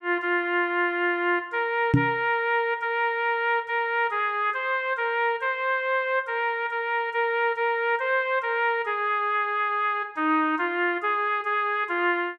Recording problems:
microphone thump; at 2 s; peak +8 dB vs average level

